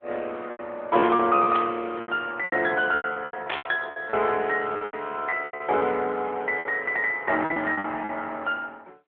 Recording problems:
telephone audio; 300 Hz to 3.5 kHz, AMR-NB
packet loss; 14% of the sound replaced, filled with repeated pitch periods
static burst; at 1.5 s and at 3.5 s; peak 0 dB vs average level

